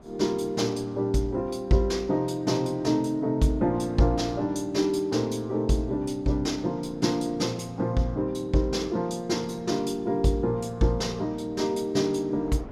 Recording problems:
wind on the microphone; below 590 Hz, SNR 23 dB

